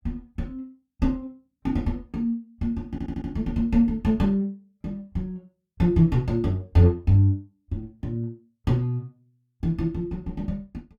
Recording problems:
audio stuttering; at 3 s

